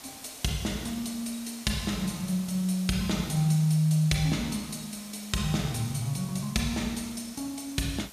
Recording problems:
hiss; slope -1 dB per octave, SNR 16 dB

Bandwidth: 14.5 kHz